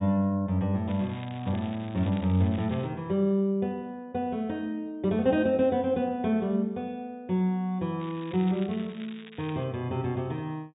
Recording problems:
low-pass filter; nothing above 4 kHz
crackling; from 1 to 3 s and from 8 to 9.5 s; loose cable, SNR 20 dB

